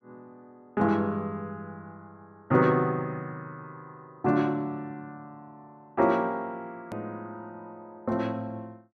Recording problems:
hard cut with a click; at 7 s

